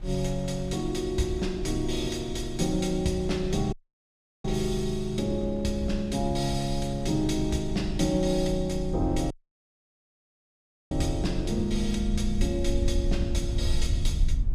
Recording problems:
low-frequency rumble; below 68 Hz, SNR 6 dB
wind on the microphone; below 1.3 kHz, SNR 25 dB
dropout; at 3.5 s for 0.5 s and at 9.5 s for 1.5 s

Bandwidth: 15 kHz